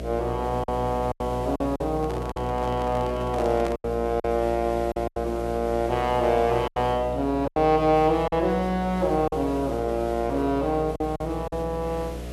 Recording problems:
hum; 60 Hz, harmonics up to 720 Hz, SNR 10 dB
hiss; slope -3 dB per octave, SNR 22 dB
packet loss; 7% of the sound replaced, filled with silence
handling noise; from 2 to 4 s; peak -4 dB vs average level

